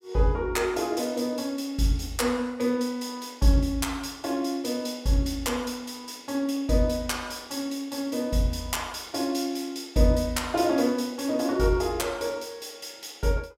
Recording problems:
none

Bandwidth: 16 kHz